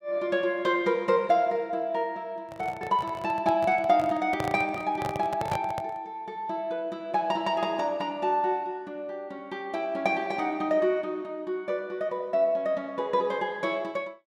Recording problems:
handling noise; from 2.5 to 6 s; peak 0 dB vs average level

